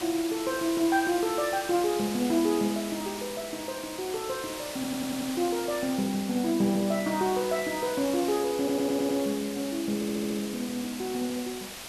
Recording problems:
hiss; slope -1 dB per octave, SNR 9 dB
audio stuttering; at 5 s, at 8.5 s and at 10 s

